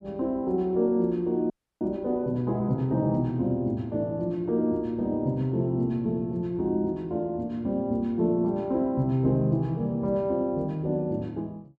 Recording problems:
audio freezing; at 1.5 s

